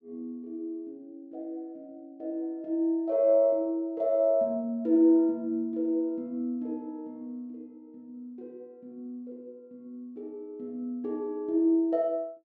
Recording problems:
none

